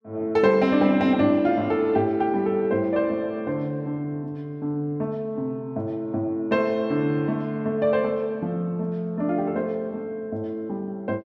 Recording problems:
none

